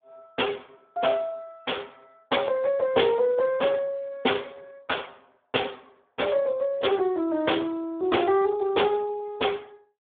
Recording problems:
telephone audio; 280 Hz to 3.5 kHz, Speex

